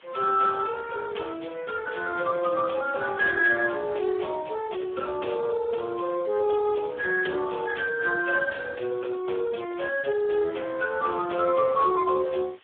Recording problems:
phone line; 320 Hz to 2.6 kHz, Speex
hiss; SNR 27 dB

